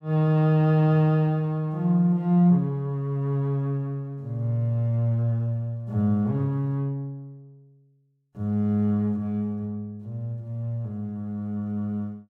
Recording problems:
none

